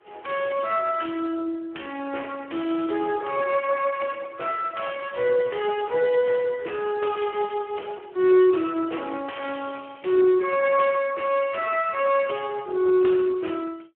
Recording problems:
telephone audio; 300 Hz to 3.1 kHz, Speex

